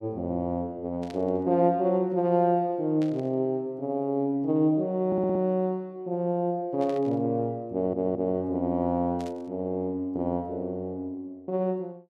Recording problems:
burst of static; 4 times, first at 1 s; peak -14 dB vs average level
stutter; at 5 s and at 7.5 s

